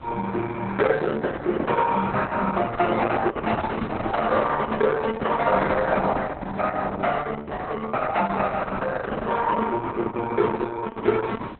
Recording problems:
codec artefacts; Opus, log-spectral distance 4 dB, nothing above 4 kHz
wind noise; below 1 kHz, SNR 20 dB

